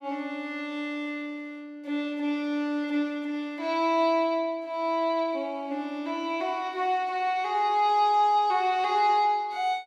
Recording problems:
none

